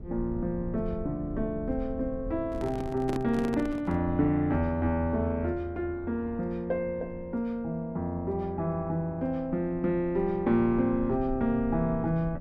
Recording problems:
low-frequency rumble; below 110 Hz, SNR 14 dB
microphone handling noise; from 2.5 to 4 s; peak -2 dB vs average level

